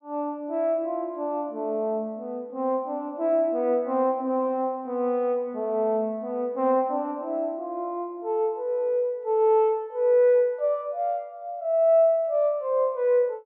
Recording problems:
none

